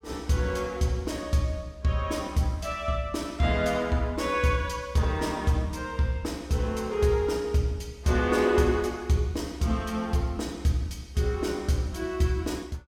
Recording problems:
none

